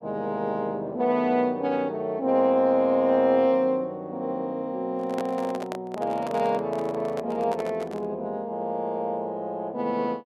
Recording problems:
microphone handling noise; from 5 to 8 s; peak -4 dB vs average level

